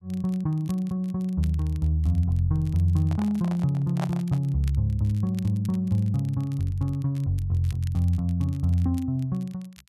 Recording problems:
crackle; vinyl, SNR 28 dB
microphone handling noise; from 3 to 4.5 s; peak -3 dB vs average level

